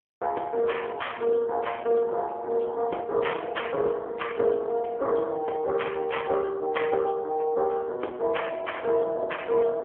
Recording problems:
phone line; 320 Hz to 3.3 kHz, AMR-NB

